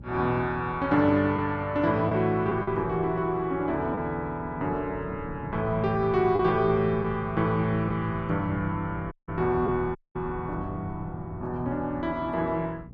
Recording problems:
hum; 60 Hz, harmonics up to 540 Hz, SNR 18 dB
wind noise; below 210 Hz, SNR 16 dB
lost packets; 1.3% of the sound replaced, filled with the last packet
audio cutting out; at 9 s and at 10 s

